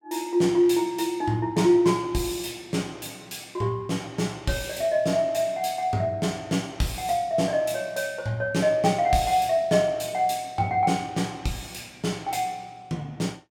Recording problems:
none

